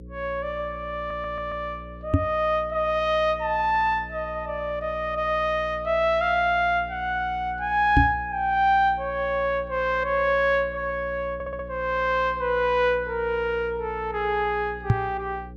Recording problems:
hum; 60 Hz, harmonics up to 540 Hz, SNR 17 dB
stutter; at 1 s and at 11 s
microphone bump; at 2 s, at 8 s and at 15 s; peak +8 dB vs average level

